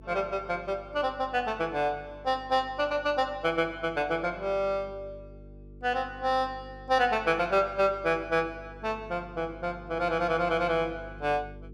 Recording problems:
electrical hum; 50 Hz, harmonics up to 450 Hz, SNR 20 dB

